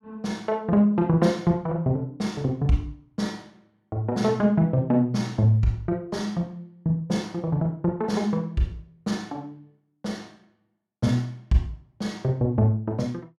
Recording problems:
none

